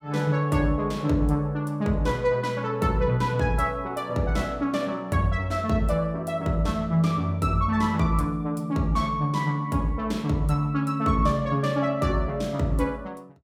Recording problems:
none

